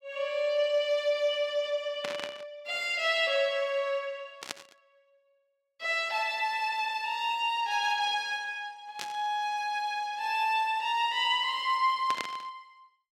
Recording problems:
burst of static; 4 times, first at 2 s; peak -2 dB vs average level

